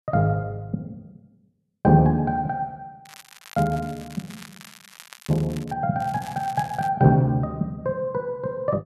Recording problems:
crackling; from 3 to 5.5 s and at 6 s; loose cable, SNR 21 dB

